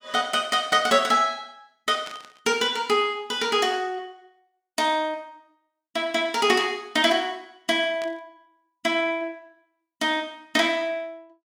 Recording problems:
static burst; at 2 s, at 6.5 s and at 8 s; peak -11 dB vs average level

